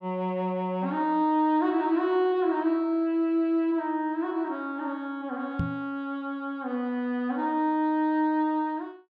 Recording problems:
microphone thump; at 5.5 s; peak +2 dB vs average level

